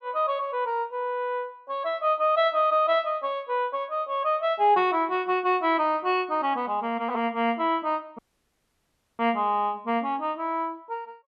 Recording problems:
dropout; at 8 s for 1 s

